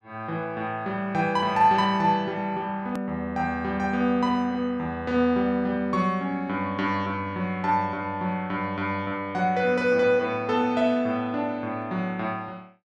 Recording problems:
click at an edit; at 3 s

